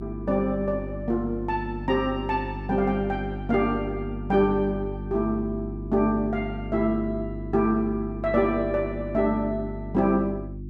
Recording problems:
hum; 50 Hz, harmonics up to 350 Hz, SNR 9 dB

